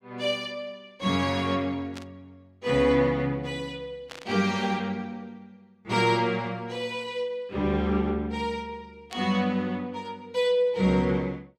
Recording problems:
burst of static; 4 times, first at 2 s; peak -9 dB vs average level

